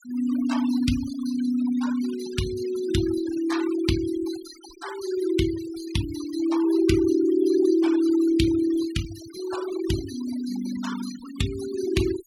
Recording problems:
noise reduction artefacts; signal-to-artefact ratio 15 dB

